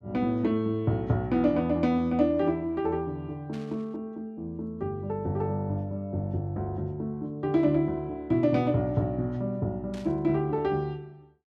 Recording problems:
burst of static; at 3.5 s and at 10 s; peak -15 dB vs average level

